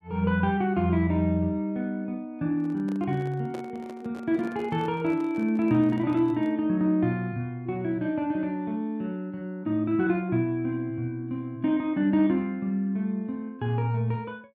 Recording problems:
microphone handling noise; from 2.5 to 6.5 s; peak -7 dB vs average level

